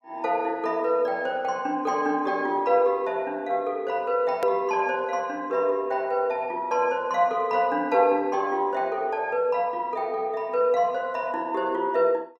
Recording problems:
edit click; at 4.5 s

